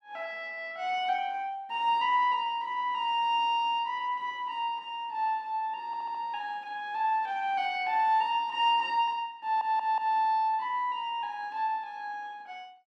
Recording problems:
stutter; at 6 s and at 9.5 s

